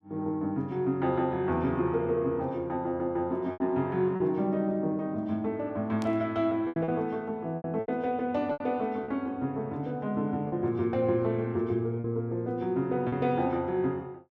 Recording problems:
lost packets; 5% of the sound replaced, filled with repeated pitch periods
burst of static; at 6 s; peak -10 dB vs average level

